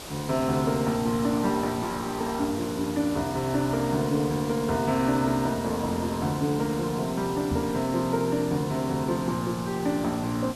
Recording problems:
background hiss; SNR 13 dB
microphone bump; at 7.5 s; peak 0 dB vs average level

